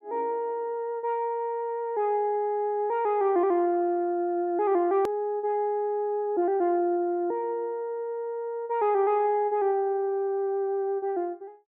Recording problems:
hard cut with a click; at 5 s

